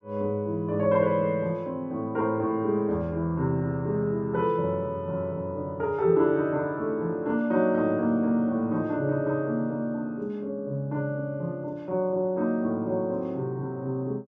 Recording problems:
none

